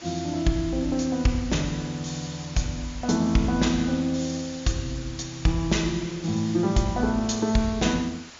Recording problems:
treble cut off; nothing above 7.2 kHz
background hiss; slope 0 dB per octave, SNR 17 dB

